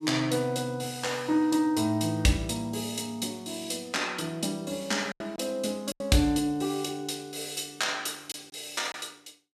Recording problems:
packet loss; 3% of the sound replaced, filled with silence

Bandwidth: 14.5 kHz